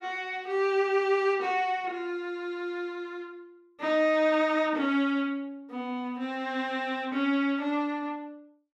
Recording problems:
none

